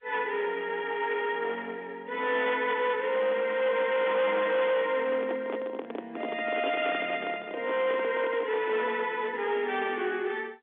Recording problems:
phone line; 240 Hz to 3.5 kHz, G.711
distorted audio; hard clipping, uneven, signal-to-distortion ratio 10 dB
microphone handling noise; from 5 to 9 s; peak -2 dB vs average level

